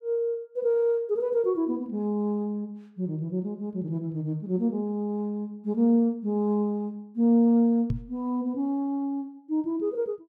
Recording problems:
knock on the microphone; at 8 s; peak +2 dB vs average level

